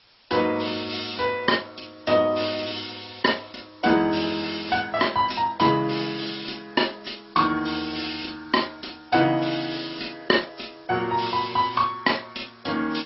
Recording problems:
lossy compression; MP2, then AAC, log-spectral distance 13 dB, nothing above 5.5 kHz
background hiss; slope +1 dB per octave, SNR 29 dB

